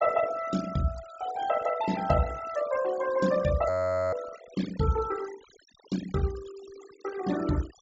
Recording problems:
treble cut off; nothing above 8 kHz
denoising artefacts; signal-to-artefact ratio 14 dB
frozen audio; at 3.5 s

